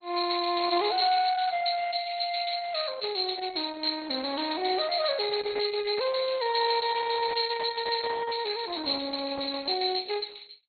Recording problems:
low-pass filter; nothing above 4.3 kHz
lossy compression; Opus, log-spectral distance 8 dB

